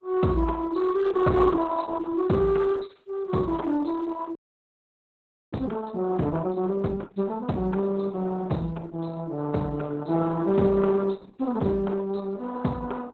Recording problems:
codec artefacts; Opus, then Opus, log-spectral distance 3 dB
audio freezing; at 4.5 s for 1 s

